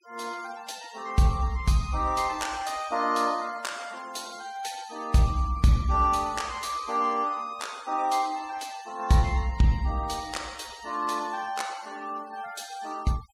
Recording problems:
noise reduction artefacts; signal-to-artefact ratio 20 dB

